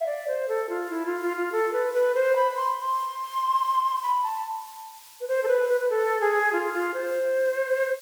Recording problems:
background hiss; slope +4 dB per octave, SNR 22 dB

